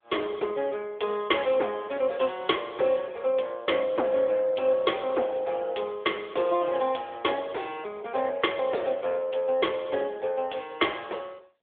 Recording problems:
telephone audio; 320 Hz to 3.6 kHz, AMR-NB

